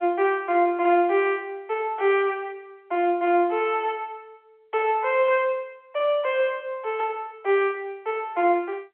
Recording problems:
phone line; 280 Hz to 3.5 kHz, G.711

